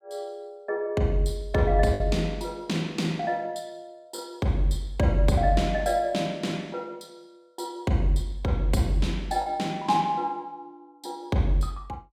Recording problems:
packet loss; 1.1% of the sound replaced, filled with the last packet

